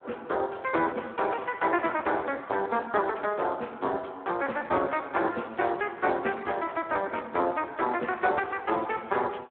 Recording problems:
phone line; 240 Hz to 3.2 kHz, Speex

